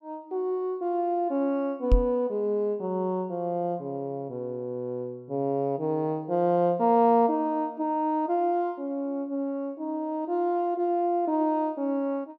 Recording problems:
microphone bump; at 2 s; peak +8 dB vs average level

